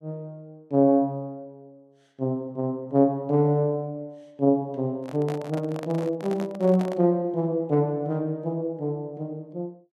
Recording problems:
handling noise; from 5 to 7 s; peak -7 dB vs average level

